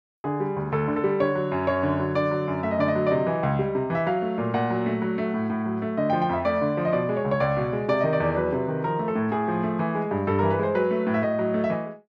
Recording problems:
none

